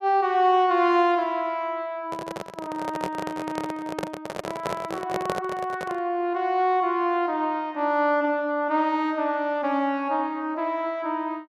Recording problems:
microphone handling noise; from 2 to 6 s; peak 0 dB vs average level

